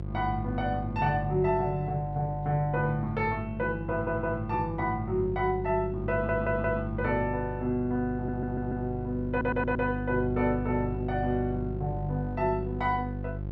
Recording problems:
hum; 50 Hz, harmonics up to 700 Hz, SNR 7 dB
stutter; 4 times, first at 4 s

